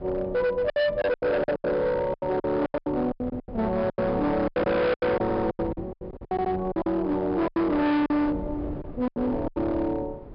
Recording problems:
treble missing; nothing above 5.5 kHz
distortion; hard clipping, signal-to-distortion ratio 6 dB
wind noise; below 390 Hz, SNR 14 dB
packet loss; 17% of the sound replaced, filled with silence
audio stuttering; at 5 s and at 6.5 s

